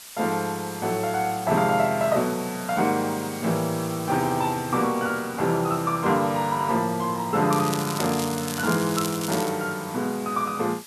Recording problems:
background hiss; slope +2 dB per octave, SNR 14 dB
crackle; from 7.5 to 9.5 s; loose cable, SNR 9 dB

